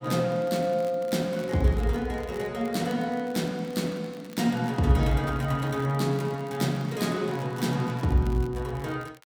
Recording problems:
crackling; vinyl, SNR 25 dB

